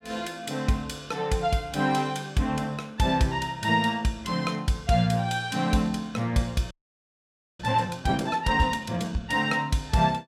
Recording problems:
frozen audio; at 6.5 s for 1 s

